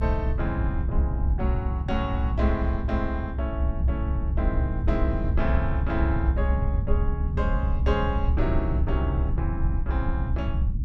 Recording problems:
low-frequency rumble; below 78 Hz, SNR -5 dB

